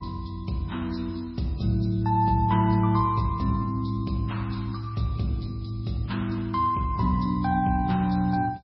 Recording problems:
lossy compression; MP3, log-spectral distance 2 dB, nothing above 5.5 kHz

